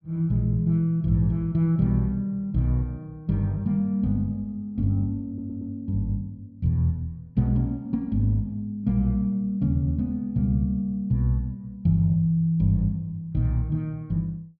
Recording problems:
stutter; at 5.5 s

